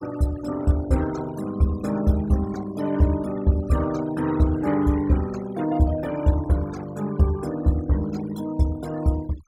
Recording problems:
denoising artefacts; signal-to-artefact ratio 19 dB

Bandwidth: 16 kHz